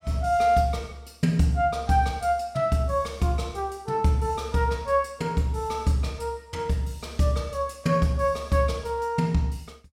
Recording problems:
none

